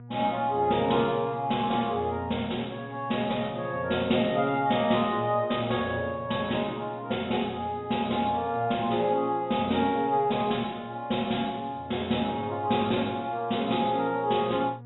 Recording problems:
low-pass filter; nothing above 3.8 kHz
hum; 60 Hz, harmonics up to 1.2 kHz, SNR 19 dB

